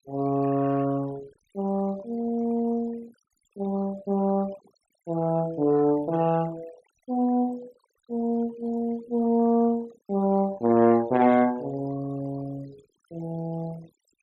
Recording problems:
noise reduction artefacts; signal-to-artefact ratio 22 dB

